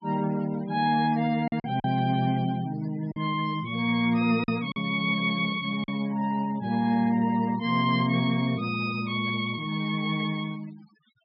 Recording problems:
treble missing; nothing above 5.5 kHz
noise reduction artefacts; signal-to-artefact ratio 21 dB
packet loss; 3% of the sound replaced, filled with silence

